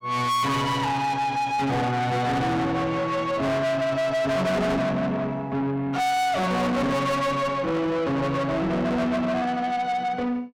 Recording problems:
distorted audio; soft clipping, signal-to-distortion ratio 6 dB

